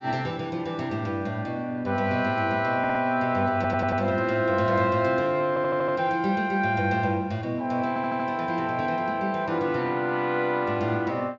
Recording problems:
treble cut off; nothing above 8 kHz
stutter; 4 times, first at 3 s

